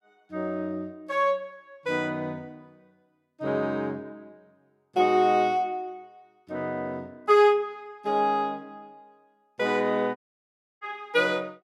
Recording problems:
dropout; at 10 s for 0.5 s

